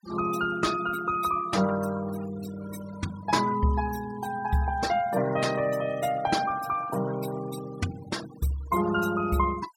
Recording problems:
noise reduction artefacts; signal-to-artefact ratio 15 dB

